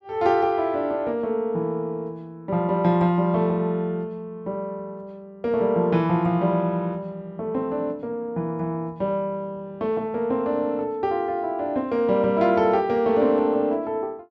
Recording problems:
none

